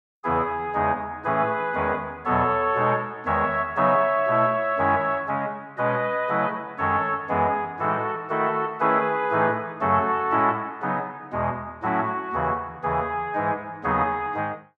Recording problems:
none

